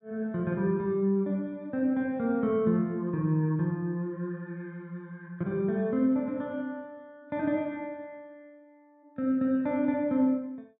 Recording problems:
none

